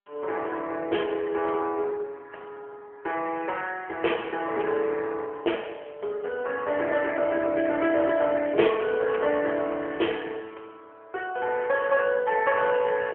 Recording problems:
phone line; 340 Hz to 3.2 kHz, AMR-NB

